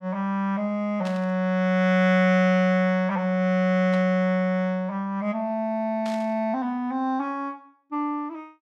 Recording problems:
static burst; at 1 s, at 4 s and at 6 s; peak -11 dB vs average level

